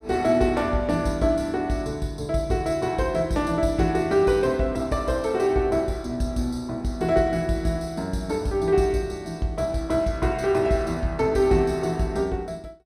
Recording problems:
none

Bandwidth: 15.5 kHz